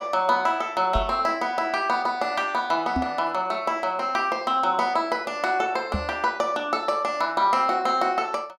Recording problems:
microphone thump; at 1 s, at 3 s and at 6 s; peak +1 dB vs average level

